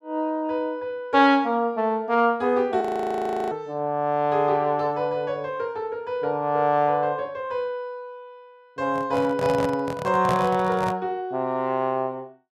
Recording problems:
frozen audio; at 3 s for 0.5 s
microphone handling noise; from 9 to 11 s; peak +1 dB vs average level

